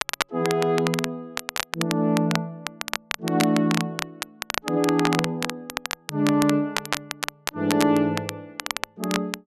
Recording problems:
crackle; vinyl, SNR 6 dB

